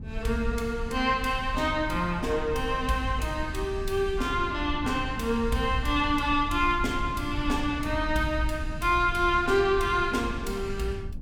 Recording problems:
low-frequency rumble; below 88 Hz, SNR 10 dB

